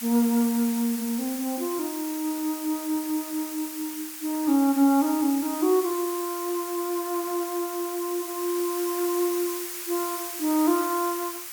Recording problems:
background hiss; SNR 8 dB

